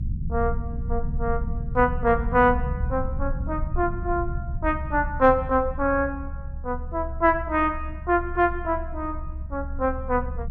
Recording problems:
low-frequency rumble; below 78 Hz, strongest tone 22 Hz, SNR 7 dB

